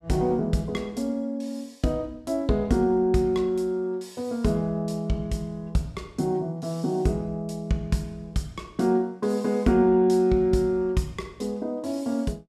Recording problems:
none

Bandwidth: 14.5 kHz